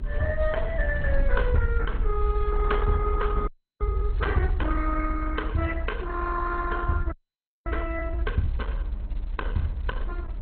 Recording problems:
lossy codec; Opus, then MP2, log-spectral distance 3 dB, nothing above 4.1 kHz
electrical hum; 50 Hz, harmonics up to 900 Hz, SNR 22 dB
rumble; below 62 Hz, SNR 1 dB
audio freezing; at 3.5 s and at 7 s for 0.5 s

